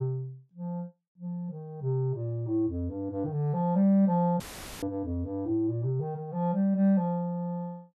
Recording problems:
dropout; at 4.5 s; filled with static

